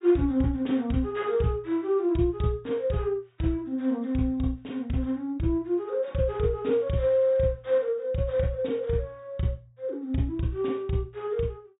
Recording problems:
low-pass filter; nothing above 4 kHz

